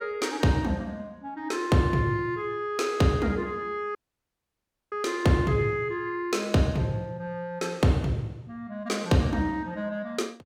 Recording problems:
audio cutting out; at 4 s for 1 s

